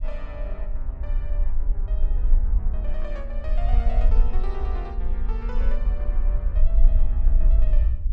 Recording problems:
rumble; below 44 Hz, strongest tone 22 Hz, SNR -14 dB

